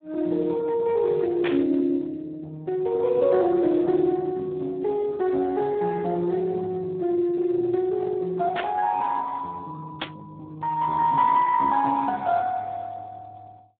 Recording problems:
phone line; 190 Hz to 3.9 kHz, Speex
static burst; at 1.5 s, at 8.5 s and at 10 s; peak -1 dB vs average level

